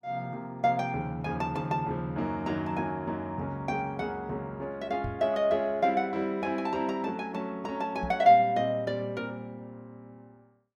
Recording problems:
knock on the microphone; at 5 s and at 8 s; peak -3 dB vs average level

